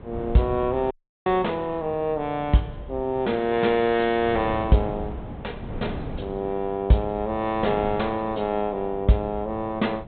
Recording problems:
treble cut off; nothing above 4 kHz
wind on the microphone; below 370 Hz, SNR 13 dB
audio cutting out; at 1 s

